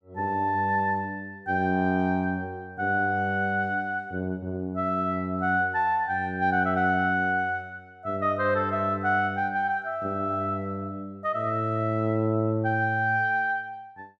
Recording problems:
none

